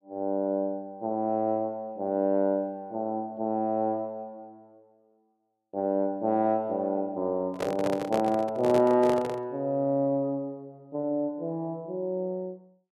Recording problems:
handling noise; from 7.5 to 9.5 s; peak 0 dB vs average level

